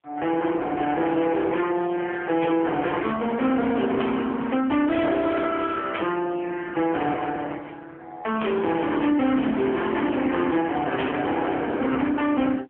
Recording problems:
telephone audio; 220 Hz to 3.3 kHz, AMR-NB
distorted audio; soft clipping, signal-to-distortion ratio 8 dB
static burst; 5 times, first at 2.5 s; peak -5 dB vs average level

